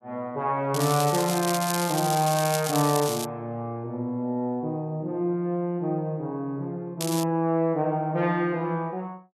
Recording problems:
crackling; from 0.5 to 3.5 s and at 7 s; loose cable, SNR 5 dB

